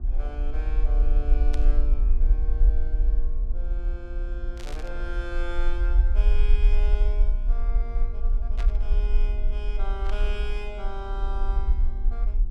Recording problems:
hum; 60 Hz, harmonics up to 1.2 kHz, SNR 10 dB
rumble; below 44 Hz, SNR -13 dB
static burst; 4 times, first at 1.5 s; peak +3 dB vs average level

